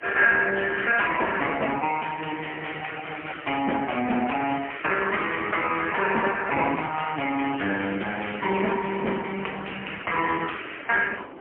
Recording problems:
phone line; 220 Hz to 3.1 kHz, AMR-NB, then MP3
wind noise; below 850 Hz, SNR 22 dB

